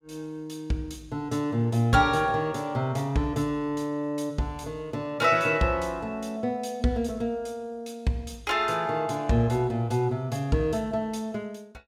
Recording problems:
none

